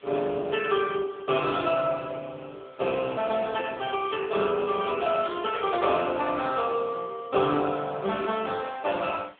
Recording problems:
telephone audio; 300 Hz to 3.5 kHz, AMR-NB
background hiss; SNR 29 dB

